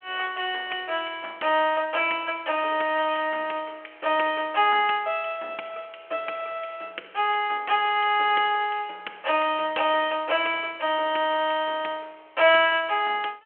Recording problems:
telephone audio; 340 Hz to 3.2 kHz, G.726

